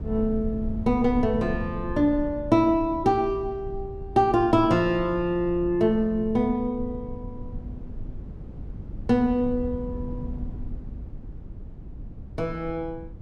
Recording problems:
low-frequency rumble; below 110 Hz, SNR 13 dB

